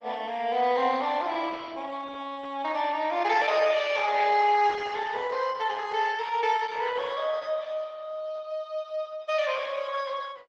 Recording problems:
lossy codec; Opus, log-spectral distance 4 dB

